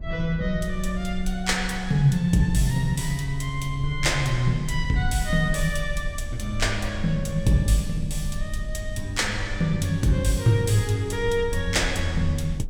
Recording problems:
rumble; below 56 Hz, strongest tone 20 Hz, SNR 10 dB

